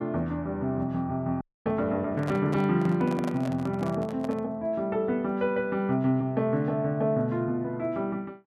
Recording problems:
frozen audio; at 1.5 s
handling noise; from 2 to 4.5 s; peak -4 dB vs average level

